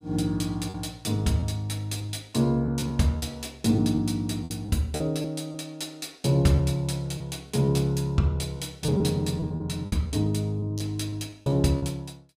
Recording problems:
lost packets; 8% of the sound replaced, filled with repeated pitch periods

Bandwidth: 15.5 kHz